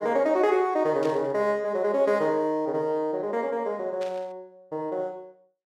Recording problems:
burst of static; at 1 s and at 4 s; peak -12 dB vs average level

